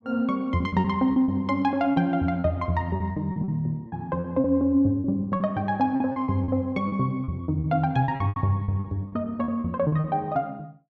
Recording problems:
lost packets; 13% of the sound replaced, filled with repeated pitch periods

